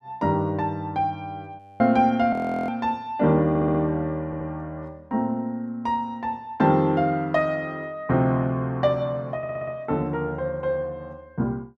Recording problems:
frozen audio; at 1.5 s and at 2.5 s
audio stuttering; at 3.5 s, at 4.5 s and at 9.5 s

